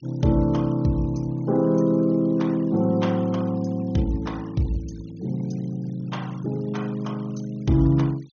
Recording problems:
low-pass filter; nothing above 6.6 kHz
denoising artefacts; signal-to-artefact ratio 27 dB

